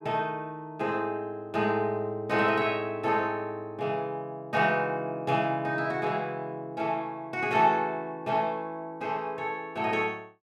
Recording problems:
none

